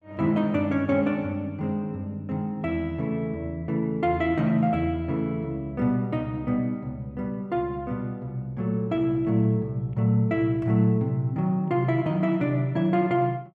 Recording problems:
none

